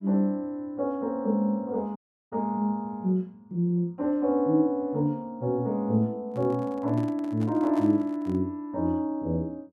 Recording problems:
audio cutting out; at 2 s
microphone handling noise; from 6.5 to 8.5 s; peak -10 dB vs average level

